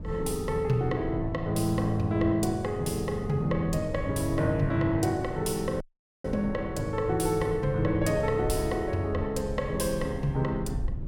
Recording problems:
rumble; below 110 Hz, SNR 12 dB
dropout; at 6 s

